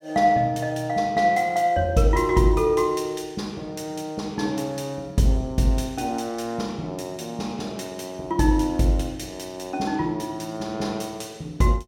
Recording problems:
none

